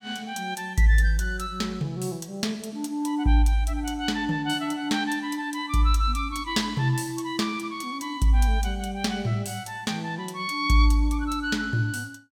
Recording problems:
none

